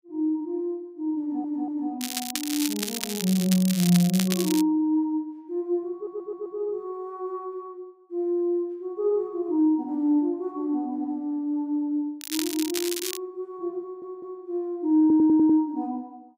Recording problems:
stutter; 4 times, first at 1 s
crackle; from 2 to 4.5 s and at 12 s; loose cable, SNR 5 dB

